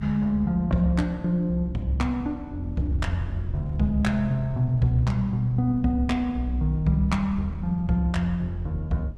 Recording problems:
electrical hum; 50 Hz, harmonics up to 450 Hz, SNR 23 dB
wind on the microphone; below 130 Hz, SNR 15 dB

